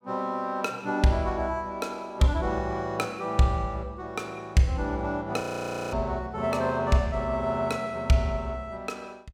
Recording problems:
audio freezing; at 5.5 s for 0.5 s

